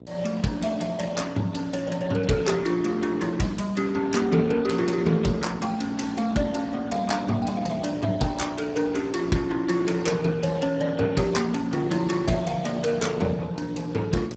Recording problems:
lossy codec; Speex, log-spectral distance 4 dB, nothing above 7.6 kHz
hum; 60 Hz, harmonics up to 780 Hz, SNR 13 dB

